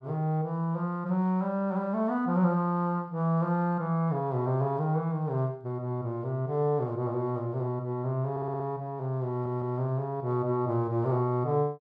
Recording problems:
stutter; at 8.5 s and at 9.5 s

